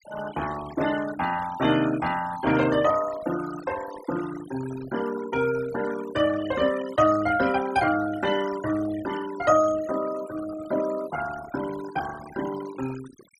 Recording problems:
denoising artefacts; signal-to-artefact ratio 13 dB

